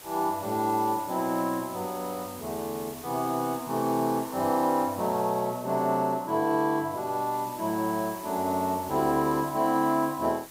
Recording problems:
hiss; slope -2 dB per octave, SNR 16 dB

